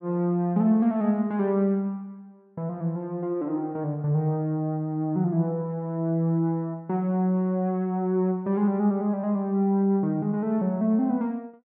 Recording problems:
none

